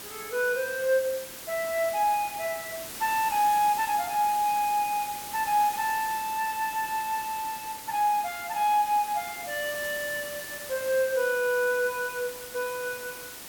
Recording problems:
background hiss; slope -1 dB per octave, SNR 10 dB

